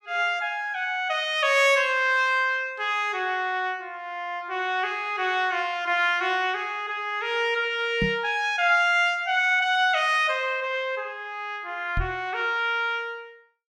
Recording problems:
microphone thump; at 8 s and at 12 s; peak 0 dB vs average level

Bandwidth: 15.5 kHz